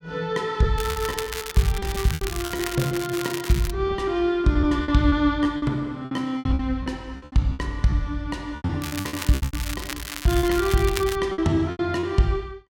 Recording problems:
lost packets; 14% of the sound replaced, filled with repeated pitch periods
crackling; from 1 to 3.5 s and from 9 to 11 s; loose cable, SNR 9 dB

